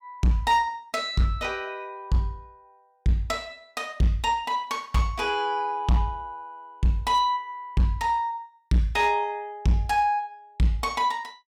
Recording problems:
distorted audio; hard clipping, signal-to-distortion ratio 12 dB

